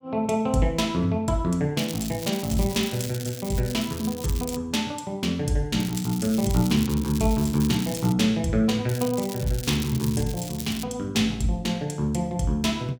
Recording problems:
crackling; from 2 to 4.5 s, from 6 to 8 s and from 9 to 11 s; loose cable, SNR 12 dB

